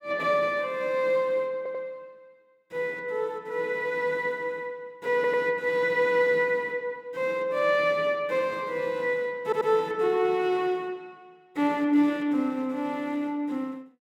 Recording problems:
audio stuttering; at 1.5 s, at 5 s and at 9.5 s

